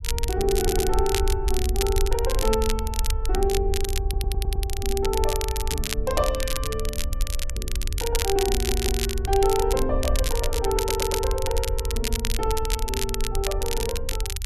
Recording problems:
rumble; below 62 Hz, SNR 2 dB
crackling; vinyl, SNR 4 dB
stutter; 4 times, first at 0.5 s

